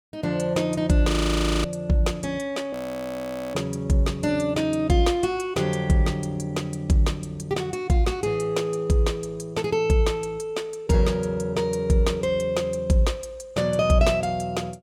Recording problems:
audio freezing; at 1 s for 0.5 s and at 2.5 s for 1 s

